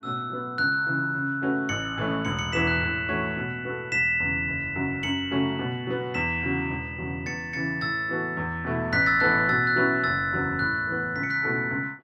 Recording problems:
none

